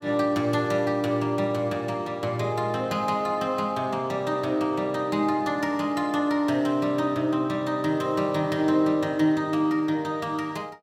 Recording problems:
none

